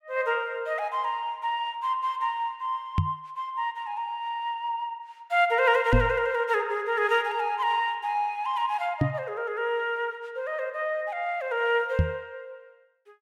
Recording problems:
knock on the microphone; 4 times, first at 3 s; peak +8 dB vs average level

